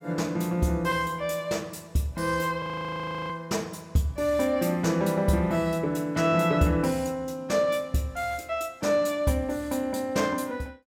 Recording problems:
frozen audio; at 2.5 s for 0.5 s

